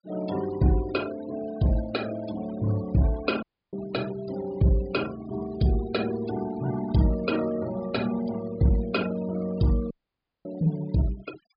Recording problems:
low-pass filter; nothing above 5 kHz
noise reduction artefacts; signal-to-artefact ratio 17 dB
dropout; at 3.5 s and at 10 s for 0.5 s

